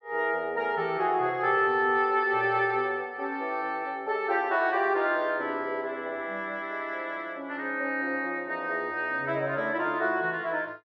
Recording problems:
none

